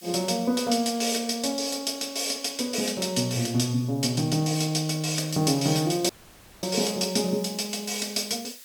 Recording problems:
background hiss; slope +5 dB per octave, SNR 22 dB
audio cutting out; at 6 s for 0.5 s

